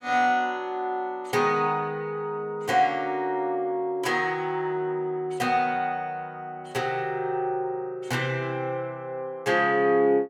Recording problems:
none

